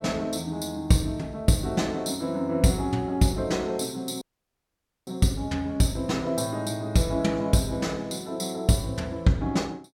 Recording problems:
dropout; at 4 s for 1 s

